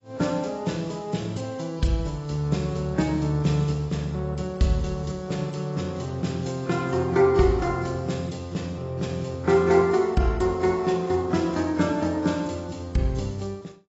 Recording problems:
lossy compression; AAC, log-spectral distance 3 dB, nothing above 7.6 kHz

